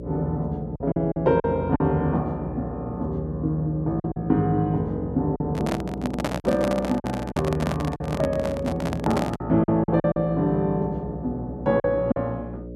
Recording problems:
electrical hum; 60 Hz, harmonics up to 600 Hz, SNR 11 dB
lost packets; 6% of the sound replaced, filled with silence
microphone handling noise; from 5.5 to 9.5 s; peak +2 dB vs average level

